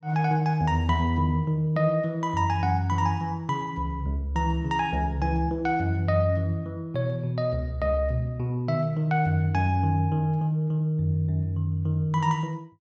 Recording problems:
none

